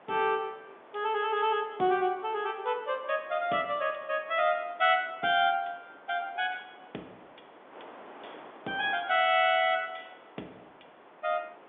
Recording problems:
phone line; 240 Hz to 3.6 kHz, G.711
wind on the microphone; below 1.3 kHz, SNR 23 dB

